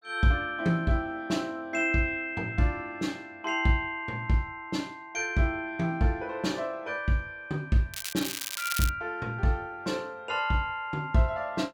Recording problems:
crackle; at 8 s; loose cable, SNR 4 dB

